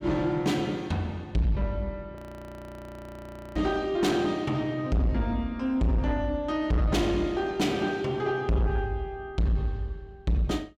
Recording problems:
distorted audio; soft clipping, signal-to-distortion ratio 7 dB
frozen audio; at 2 s for 1.5 s

